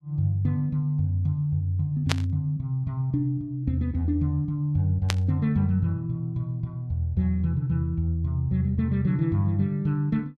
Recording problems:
burst of static; at 2 s and at 5 s; peak +4 dB vs average level

